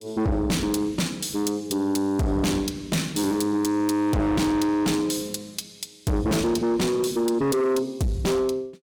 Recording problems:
distortion; soft clipping, signal-to-distortion ratio 6 dB

